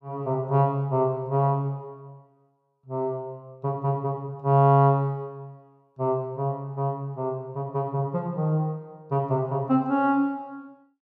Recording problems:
none

